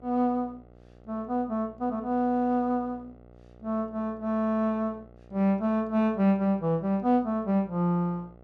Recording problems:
hum; 60 Hz, harmonics up to 1.3 kHz, SNR 25 dB

